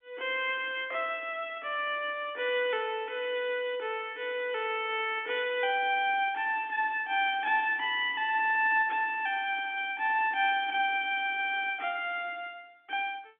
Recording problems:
telephone audio; 240 Hz to 3.5 kHz, G.711

